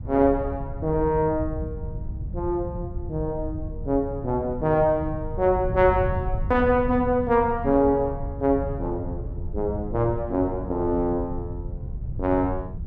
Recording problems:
wind noise; below 110 Hz, SNR 9 dB

